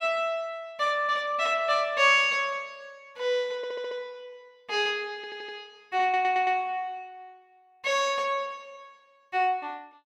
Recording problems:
audio stuttering; at 3.5 s, at 5 s and at 6 s

